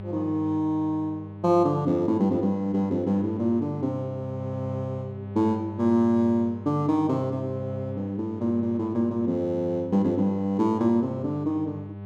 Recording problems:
hum; 50 Hz, harmonics up to 900 Hz, SNR 12 dB

